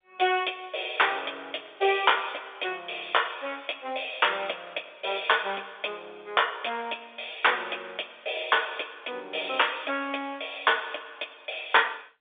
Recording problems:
telephone audio; 300 Hz to 3.6 kHz, G.711

